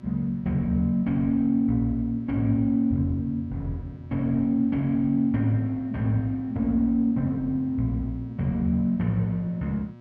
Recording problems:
hum; 60 Hz, harmonics up to 1.3 kHz, SNR 22 dB

